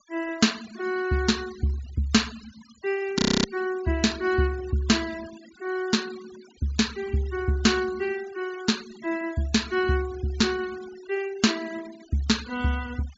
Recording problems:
treble missing; nothing above 7.5 kHz
denoising artefacts; signal-to-artefact ratio 18 dB
frozen audio; at 3 s

